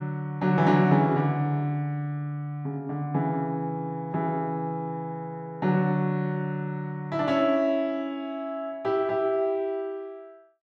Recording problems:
none

